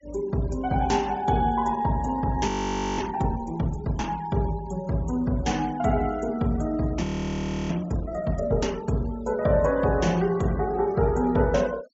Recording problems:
treble missing; nothing above 8 kHz
denoising artefacts; signal-to-artefact ratio 24 dB
frozen audio; at 2.5 s for 0.5 s and at 7 s for 0.5 s

